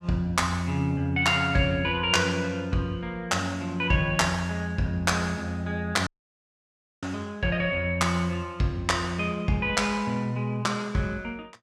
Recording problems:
audio cutting out; at 6 s for 1 s

